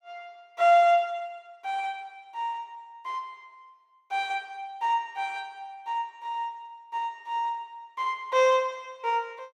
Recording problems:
none

